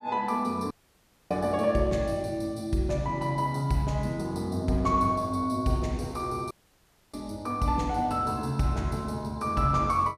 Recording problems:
audio cutting out; at 0.5 s for 0.5 s and at 6.5 s for 0.5 s

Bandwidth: 14.5 kHz